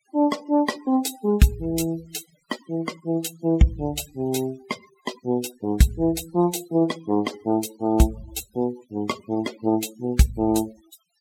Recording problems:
denoising artefacts; signal-to-artefact ratio 19 dB

